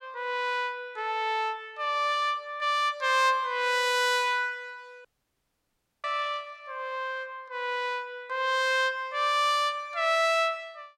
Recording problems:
audio cutting out; at 5 s for 1 s

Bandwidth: 16 kHz